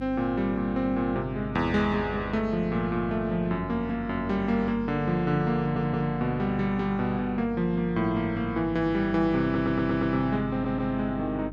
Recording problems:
mains hum; 50 Hz, harmonics up to 350 Hz, SNR 13 dB
stutter; at 5.5 s, at 9.5 s and at 11 s

